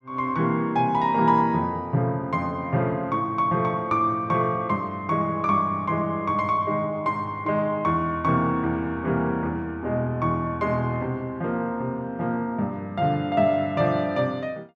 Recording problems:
none

